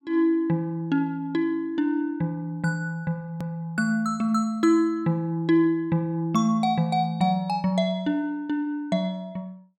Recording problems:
click at an edit; at 3.5 s

